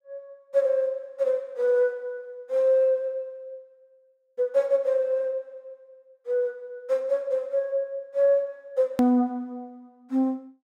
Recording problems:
edit click; at 9 s

